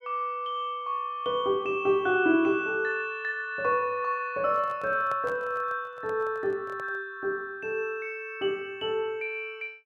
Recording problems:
handling noise; from 4.5 to 7 s; peak -9 dB vs average level

